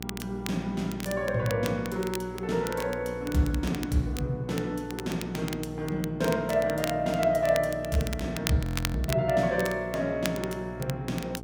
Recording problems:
electrical hum; 60 Hz, harmonics up to 900 Hz, SNR 12 dB
crackle; vinyl, SNR 12 dB
frozen audio; at 8.5 s

